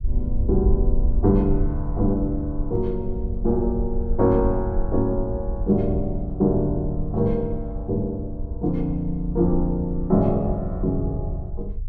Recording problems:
low-frequency rumble; below 62 Hz, SNR 6 dB

